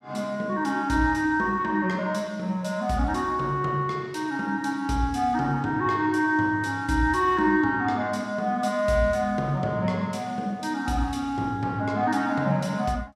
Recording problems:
none

